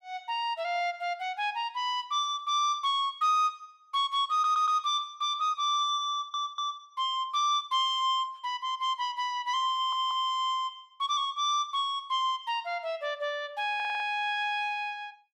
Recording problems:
stutter; 4 times, first at 4.5 s

